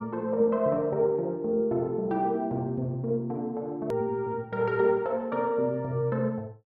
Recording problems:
edit click; at 4 s

